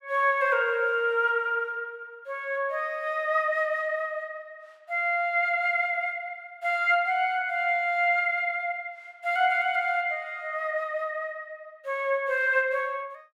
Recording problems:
none

